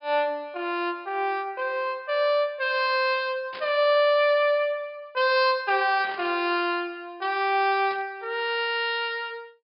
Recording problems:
treble missing; nothing above 5.5 kHz
burst of static; at 3.5 s, at 6 s and at 8 s; peak -11 dB vs average level

